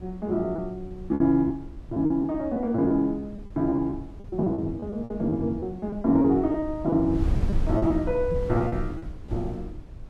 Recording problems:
wind noise; below 110 Hz, SNR 10 dB
packet loss; 11% of the sound replaced, filled with repeated pitch periods

